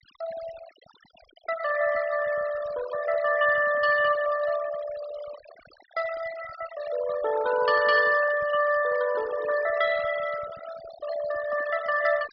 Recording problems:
low-pass filter; nothing above 5.5 kHz
denoising artefacts; signal-to-artefact ratio 14 dB

